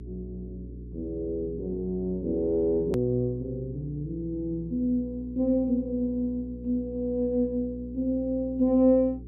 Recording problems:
mains hum; 60 Hz, harmonics up to 420 Hz, SNR 14 dB
click at an edit; at 3 s

